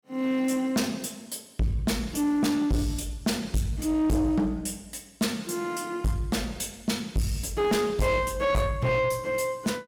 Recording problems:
distorted audio; soft clipping, signal-to-distortion ratio 7 dB

